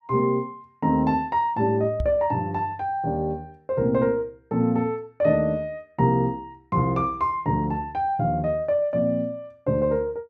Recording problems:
microphone thump; at 2 s; peak 0 dB vs average level

